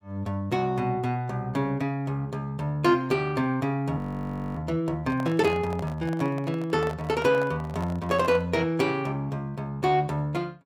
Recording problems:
frozen audio; at 4 s for 0.5 s
handling noise; from 5 to 8.5 s; peak -7 dB vs average level

